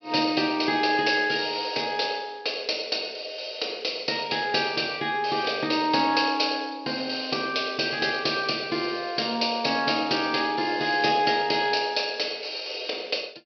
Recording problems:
low-pass filter; nothing above 5.5 kHz

